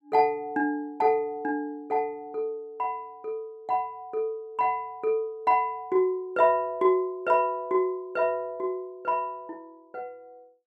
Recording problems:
none

